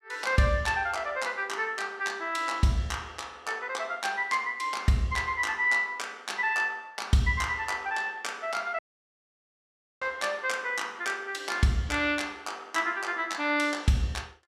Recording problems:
dropout; at 9 s for 1 s

